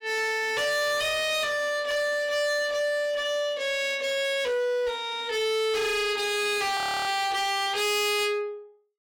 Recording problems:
distortion; hard clipping, signal-to-distortion ratio 7 dB
frozen audio; at 7 s

